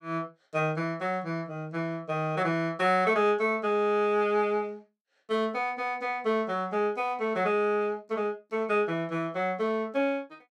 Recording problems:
none

